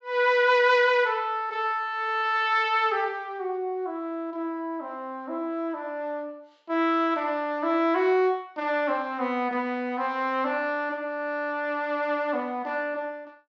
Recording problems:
treble missing; nothing above 8 kHz

